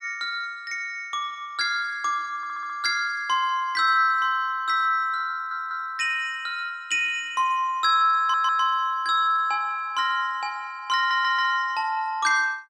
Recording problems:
audio stuttering; 4 times, first at 2.5 s

